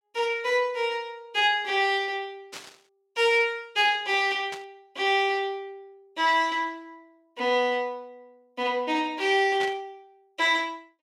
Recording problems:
static burst; at 2.5 s, at 4.5 s and at 9.5 s; peak -7 dB vs average level

